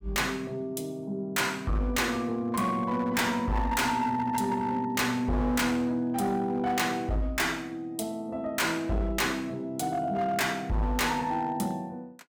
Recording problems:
distorted audio; hard clipping, signal-to-distortion ratio 7 dB

